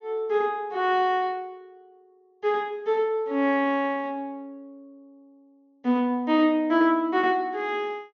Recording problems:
treble missing; nothing above 6.7 kHz

